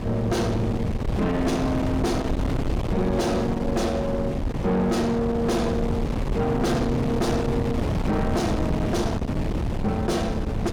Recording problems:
distortion; soft clipping, signal-to-distortion ratio 7 dB
hum; 50 Hz, harmonics up to 500 Hz, SNR 24 dB
wind noise; below 370 Hz, SNR 3 dB

